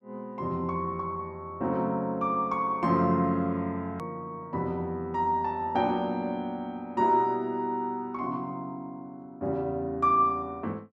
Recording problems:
edit click; at 4 s

